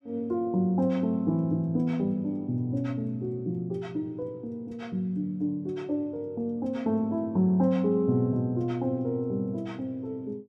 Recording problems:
none

